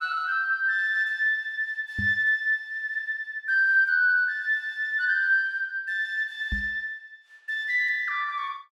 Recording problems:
microphone thump; at 2 s and at 6.5 s; peak -3 dB vs average level

